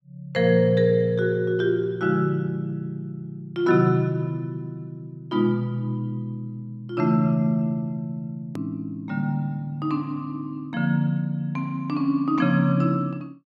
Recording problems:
edit click; at 8.5 s

